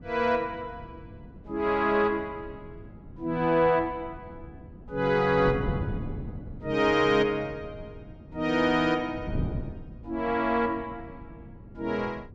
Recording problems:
wind noise; below 220 Hz, SNR 14 dB

